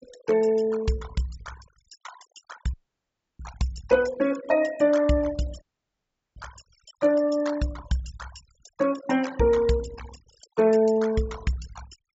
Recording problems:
treble missing; nothing above 8 kHz
noise reduction artefacts; signal-to-artefact ratio 18 dB
audio cutting out; at 2.5 s for 0.5 s and at 5.5 s for 0.5 s

